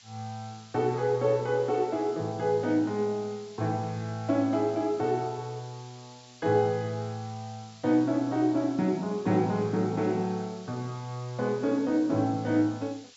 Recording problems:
low-pass filter; nothing above 8 kHz
hiss; slope +3 dB per octave, SNR 23 dB

